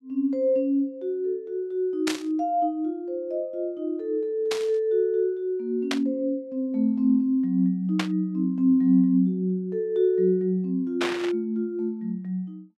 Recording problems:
burst of static; 5 times, first at 2 s; peak +1 dB vs average level

